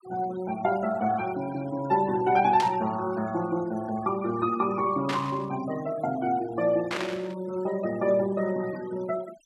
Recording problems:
denoising artefacts; signal-to-artefact ratio 18 dB
static burst; at 2.5 s, at 5 s and at 7 s; peak -1 dB vs average level

